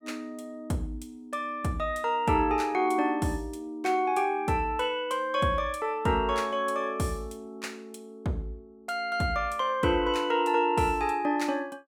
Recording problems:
none

